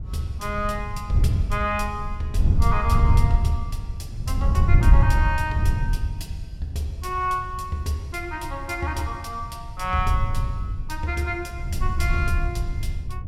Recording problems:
wind noise; below 98 Hz, SNR -3 dB

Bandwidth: 16.5 kHz